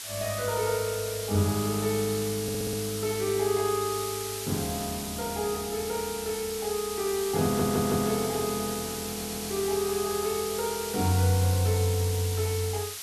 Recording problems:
hiss; slope +3 dB per octave, SNR 6 dB
stutter; at 2.5 s, at 7.5 s and at 9 s
burst of static; at 8.5 s and at 11 s; peak -14 dB vs average level

